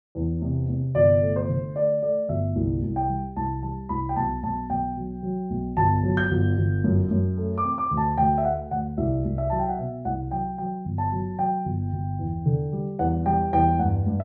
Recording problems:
none

